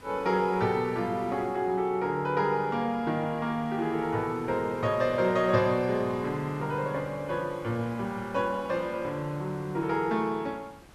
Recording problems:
hiss; slope -4 dB per octave, SNR 21 dB

